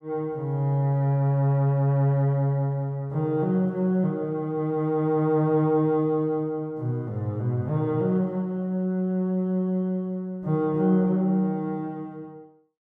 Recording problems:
none

